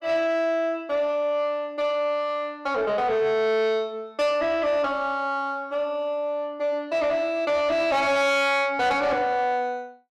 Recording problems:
distortion; soft clipping, signal-to-distortion ratio 11 dB

